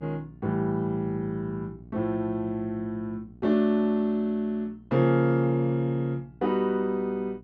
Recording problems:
hum; 60 Hz, harmonics up to 720 Hz, SNR 23 dB

